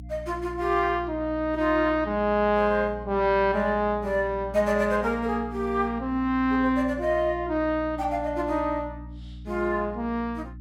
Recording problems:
hum; 60 Hz, harmonics up to 300 Hz, SNR 15 dB

